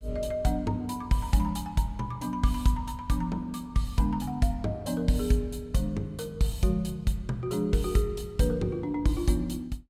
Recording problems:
none

